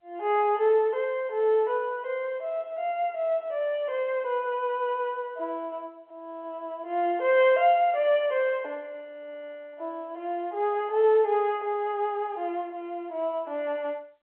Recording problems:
phone line; 280 Hz to 3.3 kHz, G.711

